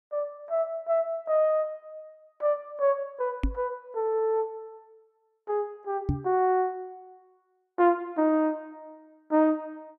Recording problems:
knock on the microphone; at 3.5 s and at 6 s; peak +4 dB vs average level

